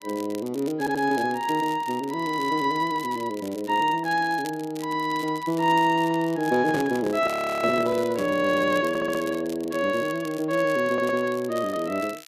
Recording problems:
crackling; vinyl, SNR 20 dB
stutter; at 1 s, at 9 s and at 11 s
microphone handling noise; from 6.5 to 8.5 s; peak -3 dB vs average level
frozen audio; at 7.5 s

